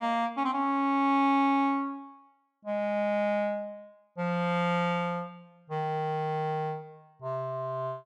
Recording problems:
none

